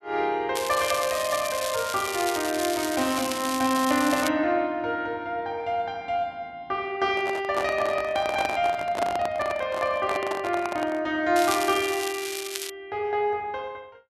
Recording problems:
crackling; from 0.5 to 4.5 s and from 11 to 13 s; loose cable, SNR 7 dB
handling noise; from 7 to 11 s; peak +2 dB vs average level

